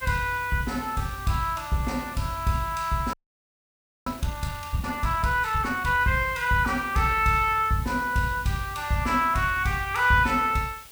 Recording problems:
background hiss; slope 0 dB per octave, SNR 19 dB
frozen audio; at 3 s for 1 s

